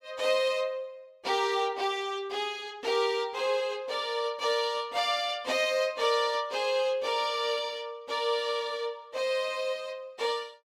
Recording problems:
none

